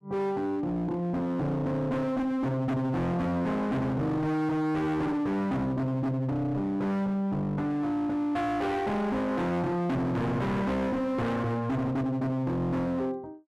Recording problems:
distortion; hard clipping, signal-to-distortion ratio 6 dB

